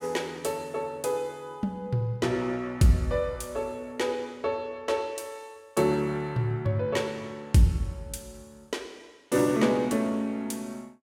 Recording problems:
none

